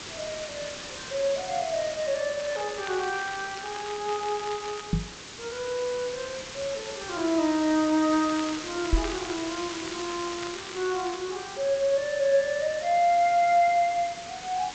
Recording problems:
codec artefacts; G.722, log-spectral distance 10 dB
hiss; slope -1 dB per octave, SNR 10 dB
crackling; from 2.5 to 5 s and from 8 to 11 s; loose cable, SNR 16 dB
microphone thump; at 5 s and at 9 s; peak +6 dB vs average level

